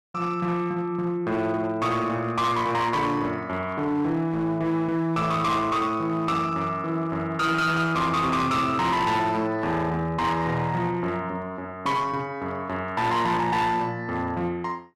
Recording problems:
distortion; hard clipping, uneven, signal-to-distortion ratio 10 dB

